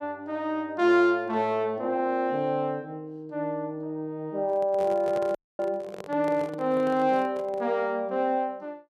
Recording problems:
handling noise; from 4.5 to 7.5 s; peak -6 dB vs average level
audio cutting out; at 5.5 s

